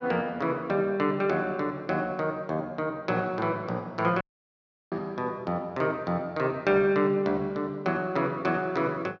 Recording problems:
dropout; at 4 s for 0.5 s

